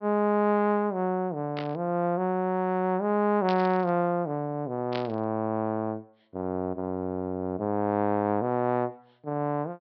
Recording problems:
treble missing; nothing above 5.5 kHz
static burst; at 1.5 s, at 3.5 s and at 5 s; peak -5 dB vs average level

